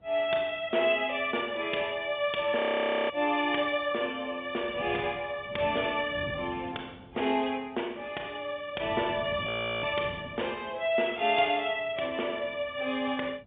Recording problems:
telephone audio; 220 Hz to 3.6 kHz, G.711
wind noise; below 460 Hz, SNR 17 dB
audio freezing; at 2.5 s for 0.5 s and at 9.5 s

